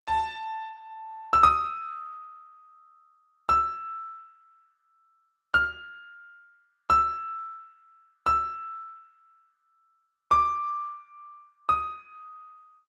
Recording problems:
lossy codec; Opus, log-spectral distance 2 dB, nothing above 13.3 kHz

